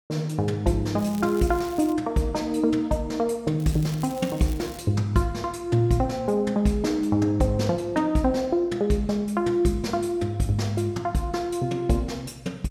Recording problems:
crackle; at 1 s and from 3.5 to 5 s; loose cable, SNR 20 dB

